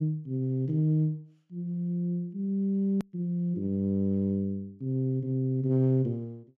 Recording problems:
click at an edit; at 3 s

